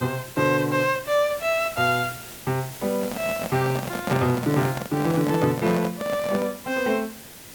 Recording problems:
hiss; SNR 14 dB
handling noise; from 3 to 6.5 s; peak +2 dB vs average level

